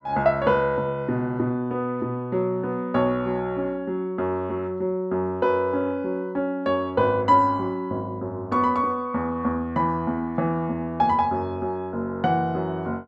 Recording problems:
none

